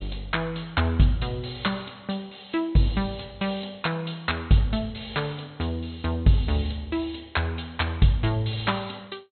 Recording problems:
treble missing; nothing above 4.2 kHz

